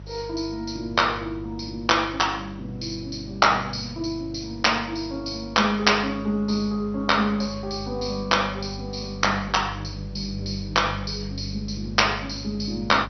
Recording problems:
codec artefacts; MP2, log-spectral distance 7 dB, nothing above 6 kHz
mains hum; 50 Hz, harmonics up to 350 Hz, SNR 14 dB
hiss; slope -5 dB per octave, SNR 29 dB

